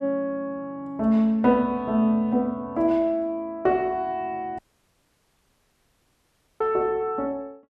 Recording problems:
dropout; at 4.5 s for 2 s

